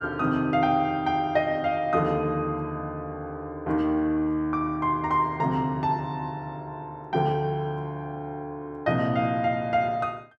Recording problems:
none

